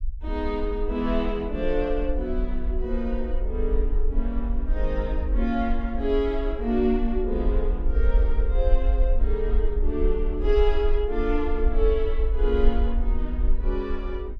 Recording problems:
rumble; below 48 Hz, SNR 0 dB

